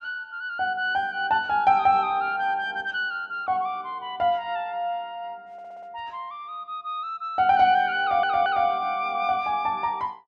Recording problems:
audio stuttering; at 5.5 s and at 8 s

